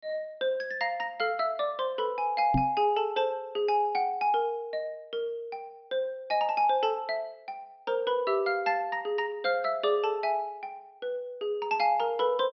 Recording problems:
treble missing; nothing above 5.5 kHz
knock on the microphone; at 2.5 s; peak +5 dB vs average level

